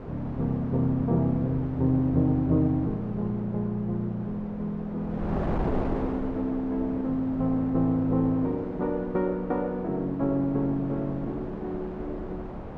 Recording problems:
wind on the microphone; below 570 Hz, SNR 9 dB

